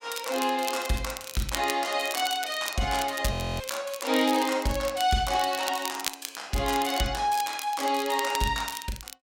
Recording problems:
crackle; vinyl, SNR 10 dB
audio freezing; at 3.5 s

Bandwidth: 16 kHz